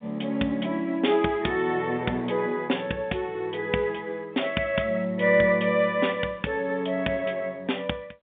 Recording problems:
phone line; 190 Hz to 3.7 kHz, G.711

